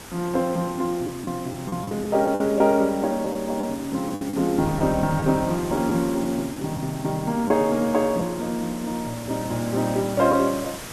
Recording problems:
background hiss; slope -3 dB per octave, SNR 14 dB
wind on the microphone; below 440 Hz, SNR 20 dB
packet loss; 5% of the sound replaced, filled with the last packet

